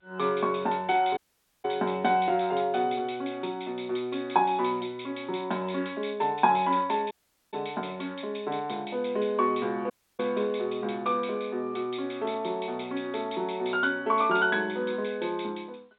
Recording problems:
telephone audio; 260 Hz to 3.6 kHz, G.711
dropout; at 1 s, at 7 s and at 10 s

